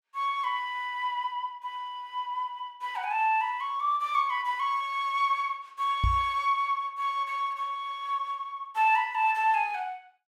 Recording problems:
knock on the microphone; at 6 s; peak +4 dB vs average level

